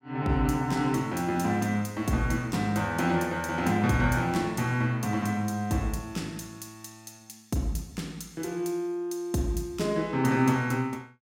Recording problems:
none

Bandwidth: 16 kHz